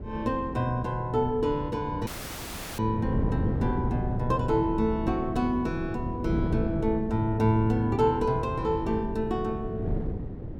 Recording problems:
wind noise; below 230 Hz, SNR 5 dB
dropout; at 2 s for 0.5 s

